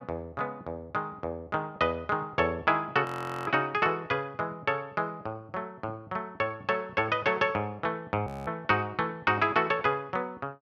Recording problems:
frozen audio; at 3 s and at 8.5 s

